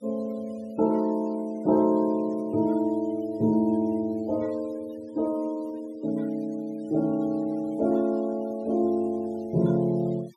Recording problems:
noise reduction artefacts; signal-to-artefact ratio 25 dB

